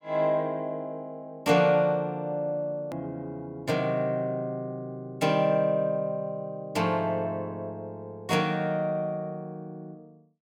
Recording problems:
click at an edit; at 3 s

